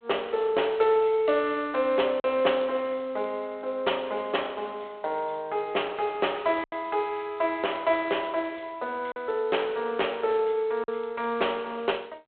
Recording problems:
telephone audio; 340 Hz to 3.6 kHz, G.726
lost packets; 1.6% of the sound replaced, filled with silence

